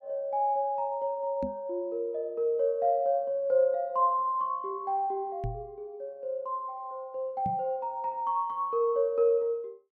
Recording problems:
microphone thump; at 1.5 s, at 5.5 s and at 7.5 s; peak -2 dB vs average level

